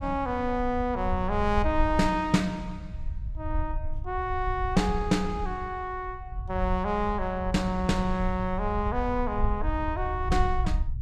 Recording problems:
low-frequency rumble; below 68 Hz, SNR 6 dB

